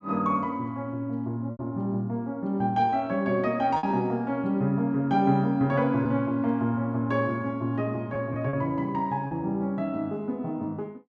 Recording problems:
packet loss; 3% of the sound replaced, filled with repeated pitch periods

